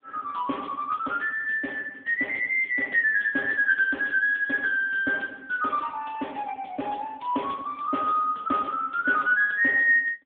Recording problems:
phone line; 260 Hz to 3.4 kHz, AMR-NB

